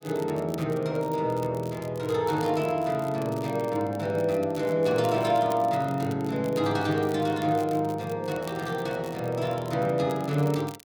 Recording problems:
crackle; vinyl, SNR 22 dB

